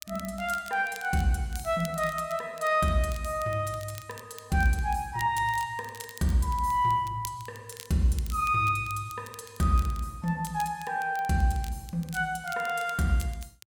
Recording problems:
crackling; vinyl, SNR 19 dB

